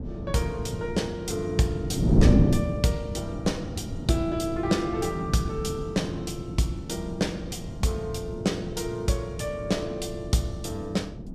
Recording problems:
wind on the microphone; below 250 Hz, SNR 2 dB

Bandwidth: 15 kHz